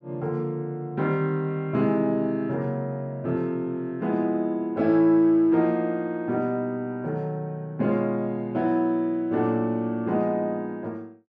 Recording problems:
none

